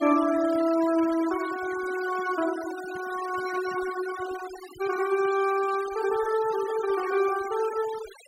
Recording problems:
noise reduction artefacts; signal-to-artefact ratio 14 dB

